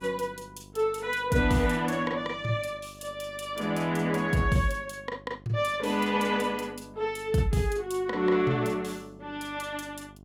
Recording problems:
hum; 50 Hz, harmonics up to 1.1 kHz, SNR 23 dB

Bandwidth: 17 kHz